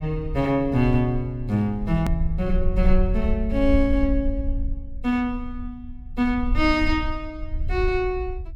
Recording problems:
low-frequency rumble; below 62 Hz, SNR 5 dB
hard cut with a click; at 2 s

